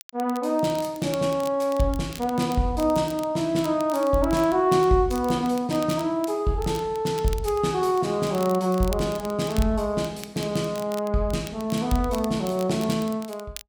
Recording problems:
crackle; vinyl, SNR 19 dB

